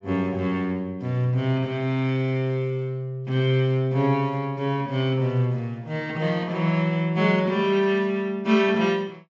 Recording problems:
treble cut off; nothing above 8 kHz

